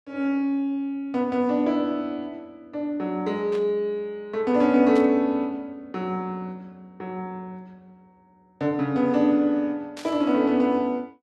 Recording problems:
burst of static; at 3.5 s, at 5 s and at 10 s; peak -12 dB vs average level

